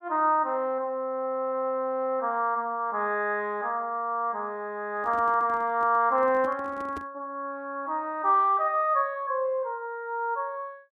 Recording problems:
handling noise; from 5 to 7 s; peak -9 dB vs average level

